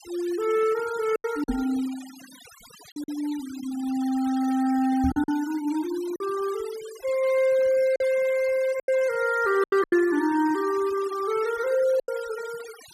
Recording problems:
noise reduction artefacts; signal-to-artefact ratio 19 dB
packet loss; 6% of the sound replaced, filled with silence
microphone thump; at 1.5 s and at 5 s; peak -1 dB vs average level

